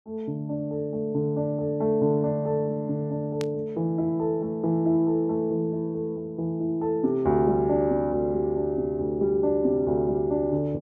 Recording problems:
static burst; at 3.5 s; peak -8 dB vs average level

